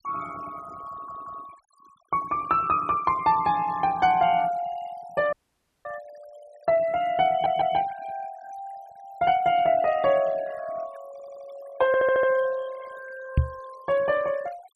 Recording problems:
noise reduction artefacts; signal-to-artefact ratio 22 dB
audio stuttering; 4 times, first at 1 s
dropout; at 5.5 s for 0.5 s
microphone bump; at 13 s; peak +6 dB vs average level

